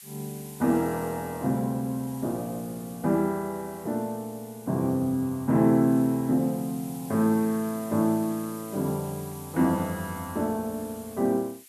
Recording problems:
background hiss; SNR 18 dB

